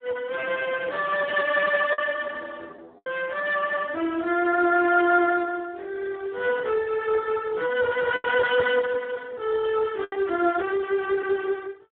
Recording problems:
telephone audio; 260 Hz to 2.9 kHz, Speex
packet loss; 3% of the sound replaced, filled with the last packet

